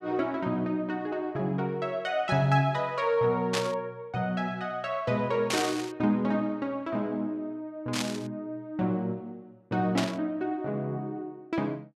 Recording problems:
burst of static; 4 times, first at 3.5 s; peak +4 dB vs average level

